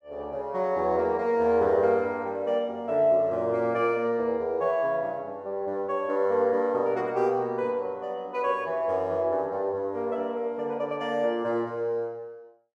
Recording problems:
none

